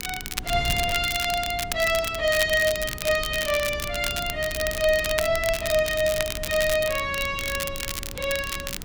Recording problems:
electrical hum; 60 Hz, harmonics up to 420 Hz, SNR 20 dB
wind noise; below 130 Hz, SNR 14 dB
crackle; vinyl, SNR 7 dB

